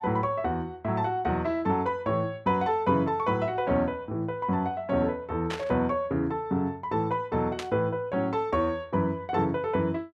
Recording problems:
static burst; at 5.5 s and at 7.5 s; peak -3 dB vs average level

